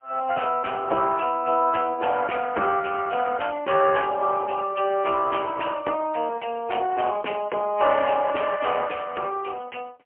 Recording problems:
telephone audio; 320 Hz to 3 kHz, AMR-NB, then MP3

